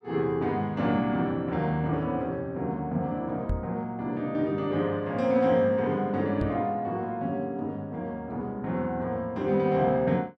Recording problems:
microphone bump; at 3.5 s and at 6.5 s; peak +1 dB vs average level

